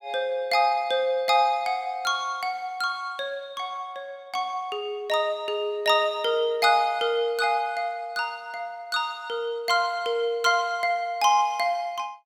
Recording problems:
none

